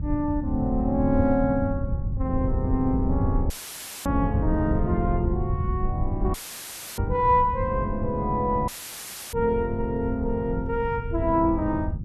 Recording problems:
electrical hum; 50 Hz, harmonics up to 350 Hz, SNR 14 dB
low-frequency rumble; below 110 Hz, SNR 4 dB
dropout; at 3.5 s for 0.5 s, at 6.5 s for 0.5 s and at 8.5 s for 0.5 s; filled with static

